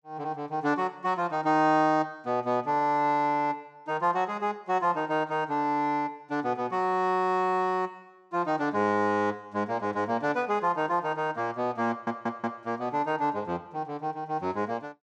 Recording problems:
audio stuttering; at 12 s

